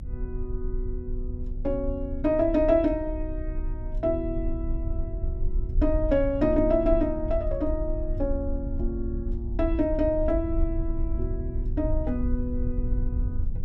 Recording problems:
rumble; below 64 Hz, strongest tone 28 Hz, SNR 5 dB

